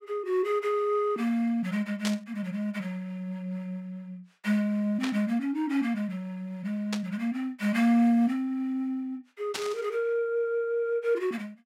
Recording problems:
static burst; 4 times, first at 2 s; peak 0 dB vs average level

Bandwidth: 16.5 kHz